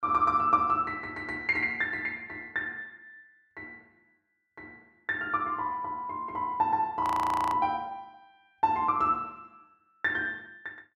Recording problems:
audio freezing; at 7 s for 0.5 s

